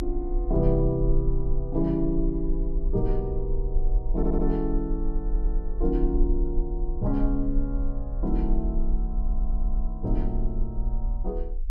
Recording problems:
rumble; below 40 Hz, strongest tone 24 Hz, SNR 0 dB
audio stuttering; at 4 s, at 5 s and at 9 s

